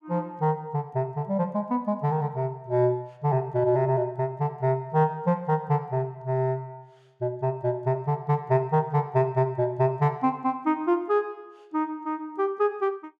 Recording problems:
none

